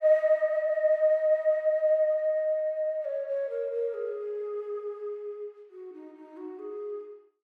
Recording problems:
none

